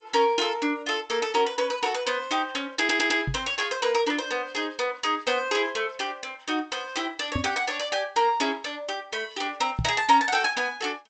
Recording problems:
codec artefacts; G.722, log-spectral distance 3 dB, nothing above 7.8 kHz
stutter; at 3 s
knock on the microphone; at 3.5 s, at 7.5 s and at 10 s; peak +1 dB vs average level

